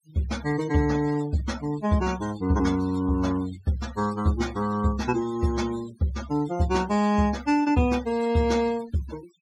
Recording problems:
denoising artefacts; signal-to-artefact ratio 17 dB

